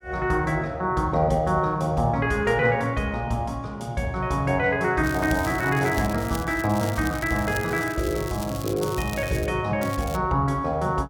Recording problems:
crackling; from 5 to 9.5 s and at 10 s; loose cable, SNR 15 dB

